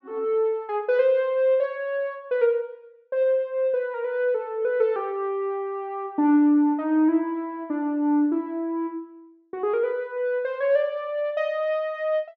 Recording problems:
low-pass filter; nothing above 8 kHz

